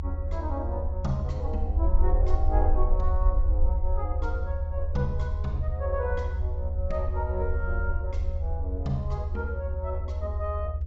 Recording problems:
treble missing; nothing above 8 kHz
hum; 60 Hz, harmonics up to 600 Hz, SNR 22 dB
low-frequency rumble; below 76 Hz, SNR -5 dB

